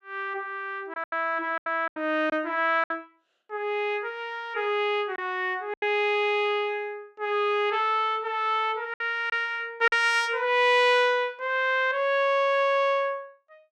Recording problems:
packet loss; 4% of the sound replaced, filled with silence

